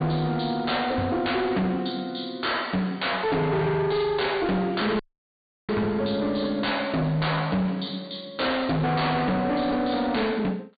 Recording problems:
treble cut off; nothing above 4.6 kHz
distorted audio; hard clipping, signal-to-distortion ratio 7 dB
audio cutting out; at 5 s for 0.5 s

